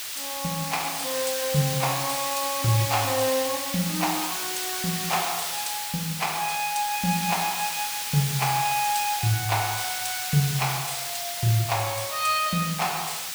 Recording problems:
hiss; slope +4 dB per octave, SNR 2 dB

